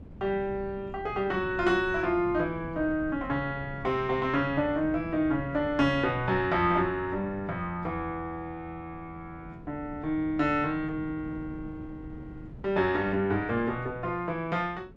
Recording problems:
wind on the microphone; below 250 Hz, SNR 16 dB

